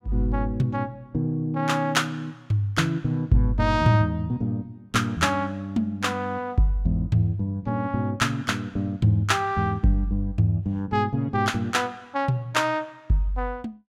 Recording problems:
none

